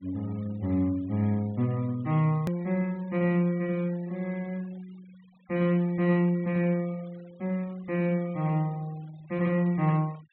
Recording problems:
low-pass filter; nothing above 4 kHz
denoising artefacts; signal-to-artefact ratio 27 dB
edit click; at 2.5 s

